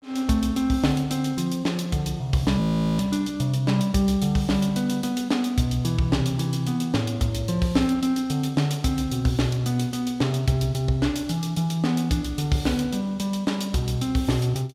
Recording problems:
audio freezing; at 2.5 s

